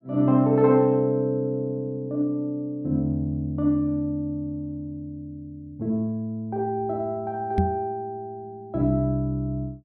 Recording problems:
knock on the microphone; at 7.5 s; peak +6 dB vs average level

